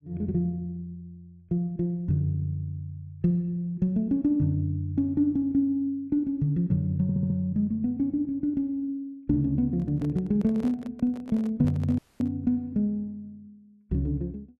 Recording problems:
audio stuttering; at 7 s
microphone handling noise; from 9.5 to 12 s; peak -10 dB vs average level
dropout; at 12 s

